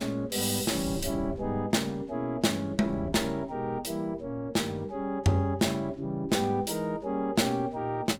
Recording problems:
wind on the microphone; below 240 Hz, SNR 18 dB

